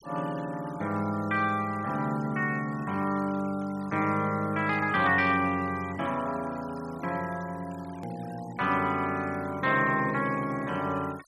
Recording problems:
noise reduction artefacts; signal-to-artefact ratio 21 dB
hard cut with a click; at 8 s

